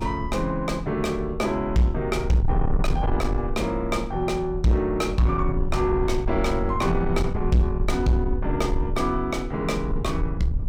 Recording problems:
distortion; soft clipping, signal-to-distortion ratio 11 dB
rumble; below 68 Hz, SNR 6 dB

